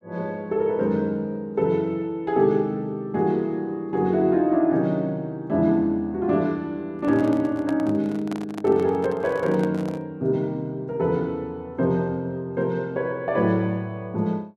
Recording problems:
handling noise; from 7 to 10 s; peak -6 dB vs average level

